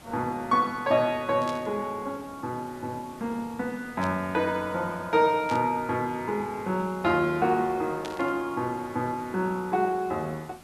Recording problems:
background hiss; slope -4 dB per octave, SNR 21 dB
static burst; 4 times, first at 1.5 s; peak -7 dB vs average level

